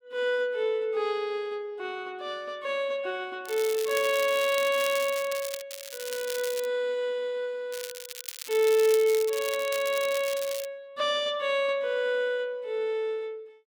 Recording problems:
crackling; from 3.5 to 5.5 s, at 5.5 s and from 7.5 to 11 s; loose cable, SNR 10 dB

